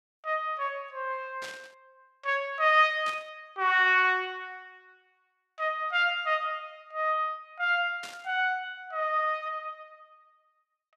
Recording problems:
burst of static; at 1.5 s, at 3 s and at 8 s; peak -9 dB vs average level

